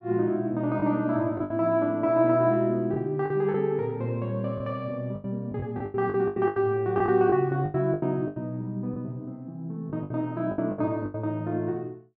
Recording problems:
lost packets; 10% of the sound replaced, filled with the last packet

